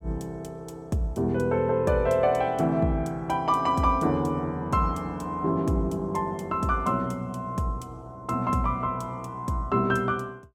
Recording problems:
none

